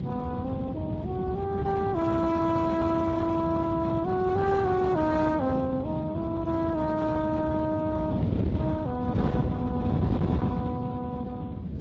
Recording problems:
lossy compression; Speex, then AAC, log-spectral distance 3 dB, nothing above 7.3 kHz
distortion; hard clipping, signal-to-distortion ratio 11 dB
wind noise; below 290 Hz, SNR 3 dB

